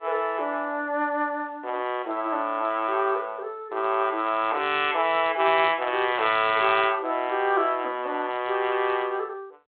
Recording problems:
telephone audio; 300 Hz to 3.6 kHz, G.726

